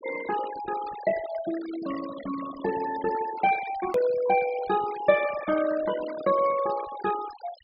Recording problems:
treble cut off; nothing above 5.5 kHz
denoising artefacts; signal-to-artefact ratio 13 dB
edit click; at 4 s

